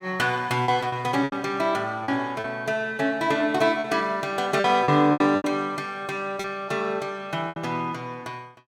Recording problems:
packet loss; 8% of the sound replaced, filled with repeated pitch periods

